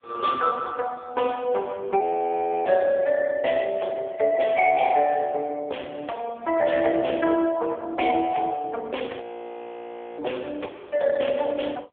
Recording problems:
telephone audio; 340 Hz to 2.8 kHz, AMR-NB
audio freezing; at 2 s for 0.5 s and at 9 s for 1 s

